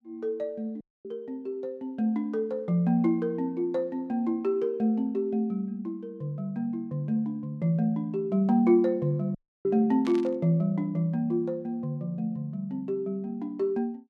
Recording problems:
dropout; at 1 s and at 9.5 s
burst of static; at 10 s; peak -8 dB vs average level

